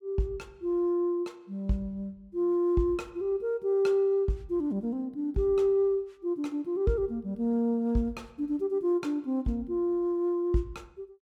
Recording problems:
none

